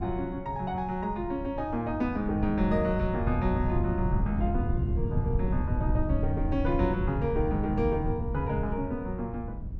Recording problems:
wind on the microphone; below 120 Hz, SNR 2 dB

